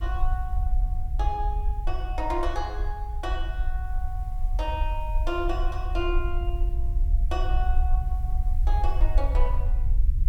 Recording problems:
hiss; SNR 27 dB
low-frequency rumble; below 54 Hz, SNR -5 dB

